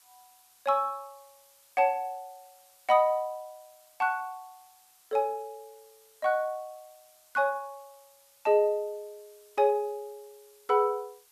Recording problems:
hiss; SNR 29 dB

